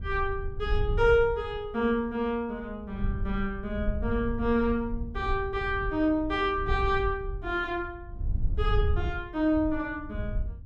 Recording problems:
wind on the microphone; below 78 Hz, SNR 6 dB

